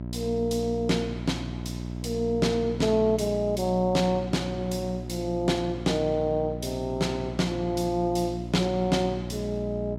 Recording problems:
hum; 60 Hz, harmonics up to 960 Hz, SNR 8 dB

